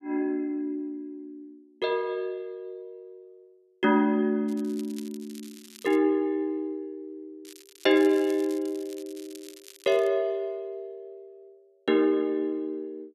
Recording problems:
crackle; from 4.5 to 6 s and from 7.5 to 10 s; loose cable, SNR 22 dB

